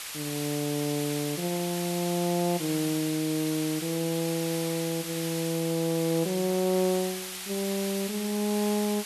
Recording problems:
background hiss; SNR 6 dB

